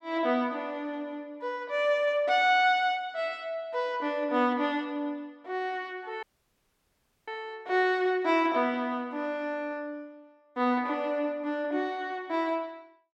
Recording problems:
audio cutting out; at 6 s for 1 s

